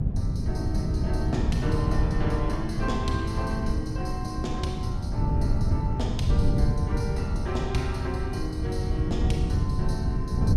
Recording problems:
rumble; below 68 Hz, strongest tone 64 Hz, SNR 9 dB
wind on the microphone; below 140 Hz, SNR -4 dB

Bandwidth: 16 kHz